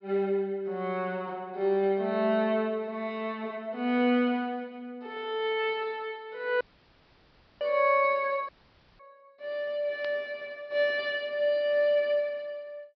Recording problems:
low-pass filter; nothing above 5.5 kHz
audio cutting out; at 6.5 s for 1 s and at 8.5 s for 0.5 s
burst of static; at 10 s; peak -11 dB vs average level

